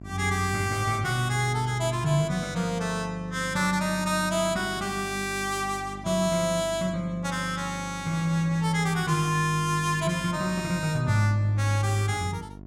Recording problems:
mains hum; 50 Hz, harmonics up to 1 kHz, SNR 16 dB

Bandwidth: 17 kHz